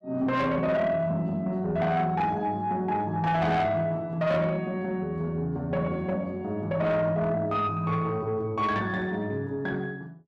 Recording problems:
distorted audio; soft clipping, signal-to-distortion ratio 10 dB

